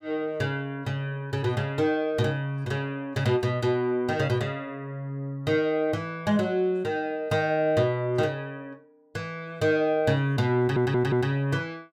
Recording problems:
audio stuttering; at 11 s

